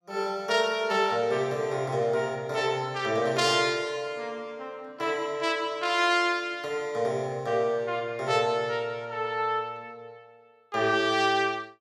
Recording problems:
none

